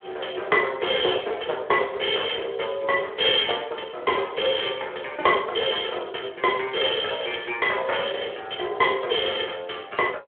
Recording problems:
phone line; 340 Hz to 3.4 kHz, Speex

